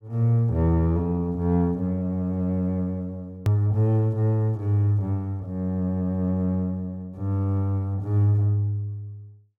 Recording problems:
hard cut with a click; at 3.5 s

